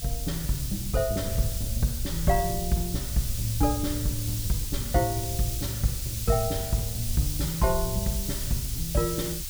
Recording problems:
hiss; slope +6 dB per octave, SNR 4 dB
rumble; below 70 Hz, SNR 7 dB

